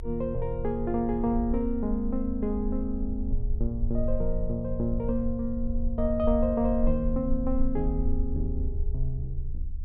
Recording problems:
rumble; below 56 Hz, strongest tone 22 Hz, SNR 5 dB

